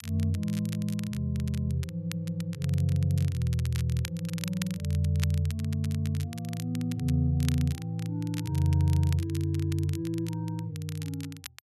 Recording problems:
crackling; vinyl, SNR 16 dB

